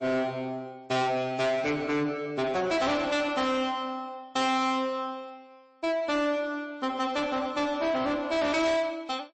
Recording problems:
lossy compression; MP3, log-spectral distance 2 dB, nothing above 8.2 kHz
distortion; soft clipping, signal-to-distortion ratio 7 dB

